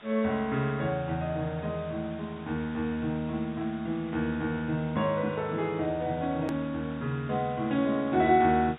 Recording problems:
treble missing; nothing above 4 kHz
hiss; SNR 21 dB
hard cut with a click; at 6.5 s

